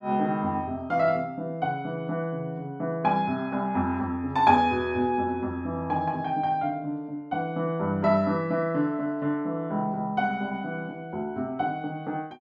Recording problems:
none

